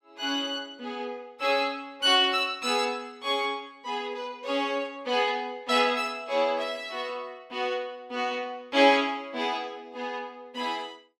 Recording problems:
none

